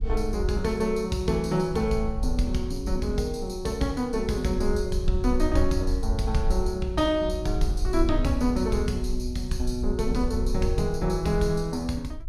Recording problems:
low-frequency rumble; below 58 Hz, SNR 5 dB

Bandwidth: 16 kHz